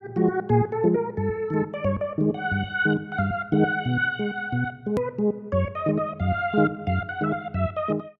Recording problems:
hard cut with a click; at 5 s

